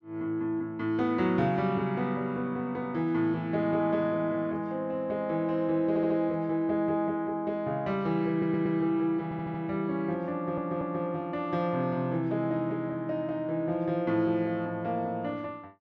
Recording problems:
audio stuttering; 4 times, first at 6 s

